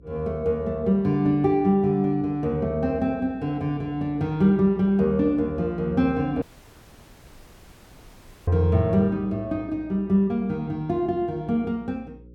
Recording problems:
hum; 60 Hz, harmonics up to 540 Hz, SNR 24 dB
dropout; at 6.5 s for 2 s

